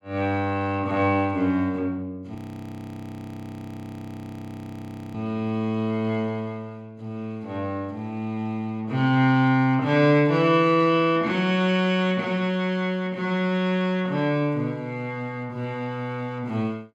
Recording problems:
audio freezing; at 2.5 s for 3 s

